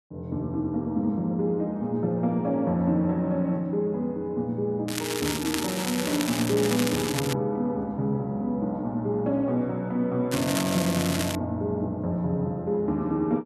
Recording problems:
crackling; from 5 to 6 s, from 6 to 7.5 s and from 10 to 11 s; loose cable, SNR 5 dB

